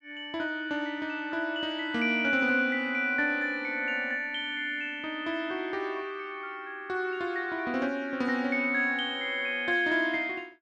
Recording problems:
none

